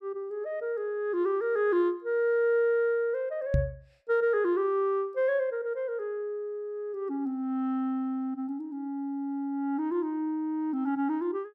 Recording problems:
knock on the microphone; at 3.5 s; peak +6 dB vs average level

